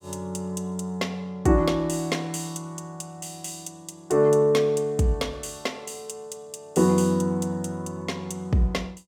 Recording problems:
none

